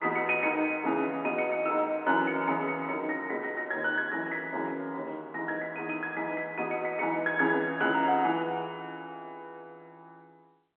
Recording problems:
phone line; 240 Hz to 3.3 kHz, G.711

